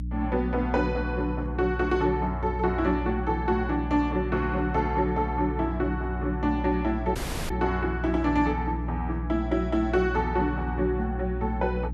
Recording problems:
hum; 60 Hz, harmonics up to 300 Hz, SNR 6 dB
dropout; at 7 s

